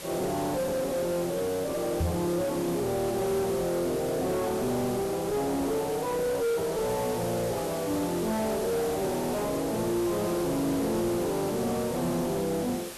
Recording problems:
distorted audio; soft clipping, signal-to-distortion ratio 7 dB
hiss; slope -2 dB per octave, SNR 11 dB
microphone bump; at 2 s; peak +4 dB vs average level

